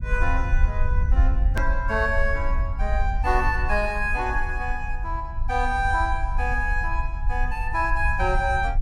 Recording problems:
rumble; below 60 Hz, SNR 1 dB
hard cut with a click; at 1.5 s

